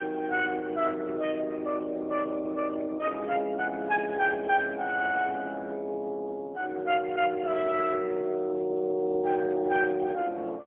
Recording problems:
phone line; 240 Hz to 3.3 kHz, AMR-NB, then MP3

